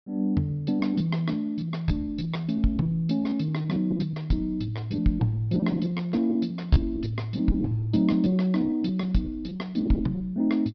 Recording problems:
treble missing; nothing above 5.5 kHz
lost packets; 12% of the sound replaced, filled with repeated pitch periods

